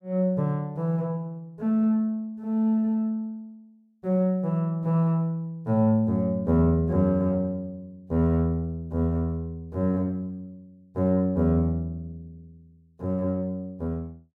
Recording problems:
none

